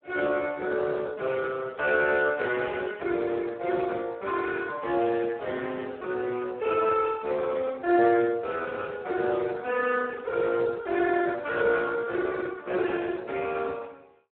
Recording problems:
telephone audio; 300 Hz to 2.6 kHz, Speex

